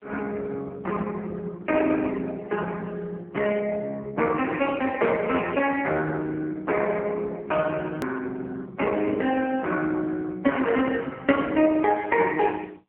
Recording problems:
telephone audio; 260 Hz to 3.1 kHz, AMR-NB
hard cut with a click; at 8 s

